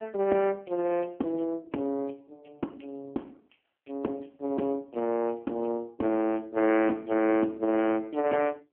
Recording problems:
phone line; 240 Hz to 3.5 kHz, AMR-NB

